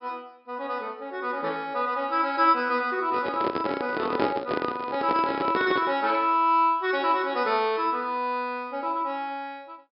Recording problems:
treble cut off; nothing above 5.5 kHz
microphone handling noise; from 3 to 6 s; peak +3 dB vs average level

